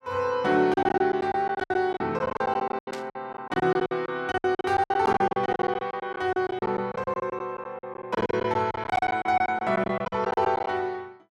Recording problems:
packet loss; 19% of the sound replaced, filled with silence
static burst; at 3 s and at 9 s; peak -8 dB vs average level

